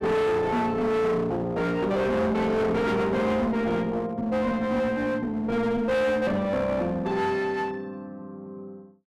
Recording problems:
distorted audio; hard clipping, uneven, signal-to-distortion ratio 6 dB

